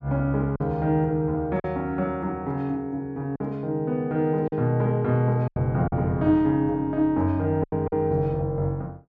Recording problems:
lost packets; 4% of the sound replaced, filled with silence

